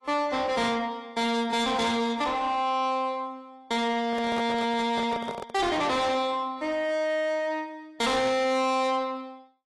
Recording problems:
codec artefacts; AAC, log-spectral distance 2 dB, nothing above 11.3 kHz
distortion; soft clipping, signal-to-distortion ratio 7 dB
handling noise; from 4 to 5.5 s; peak -2 dB vs average level

